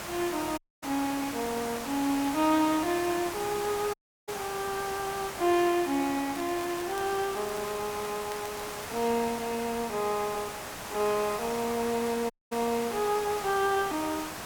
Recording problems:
hiss; SNR 7 dB
dropout; at 0.5 s, at 4 s and at 12 s
crackle; from 6.5 to 9 s; loose cable, SNR 19 dB

